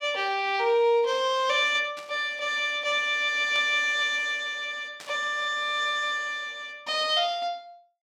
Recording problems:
static burst; at 2 s, at 3.5 s and at 5 s; peak -12 dB vs average level

